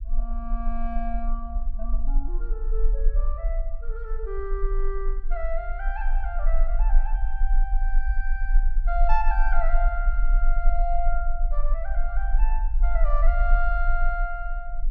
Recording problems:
low-frequency rumble; below 36 Hz, strongest tone 22 Hz, SNR -6 dB

